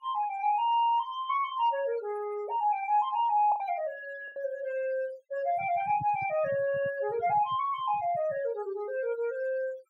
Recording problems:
denoising artefacts; signal-to-artefact ratio 21 dB
packet loss; 1.6% of the sound replaced, filled with the last packet
handling noise; from 5.5 to 8.5 s; peak -7 dB vs average level

